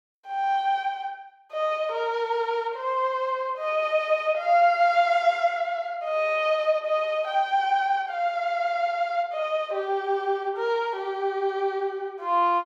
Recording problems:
none

